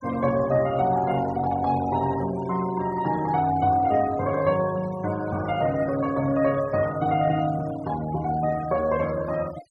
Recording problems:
denoising artefacts; signal-to-artefact ratio 18 dB

